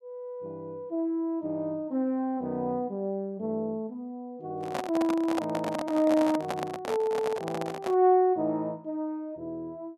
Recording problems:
microphone handling noise; from 4.5 to 8 s; peak +2 dB vs average level

